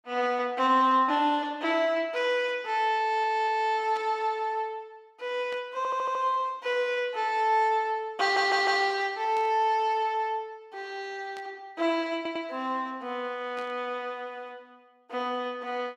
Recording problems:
stutter; 4 times, first at 3 s
burst of static; 5 times, first at 4 s; peak -13 dB vs average level

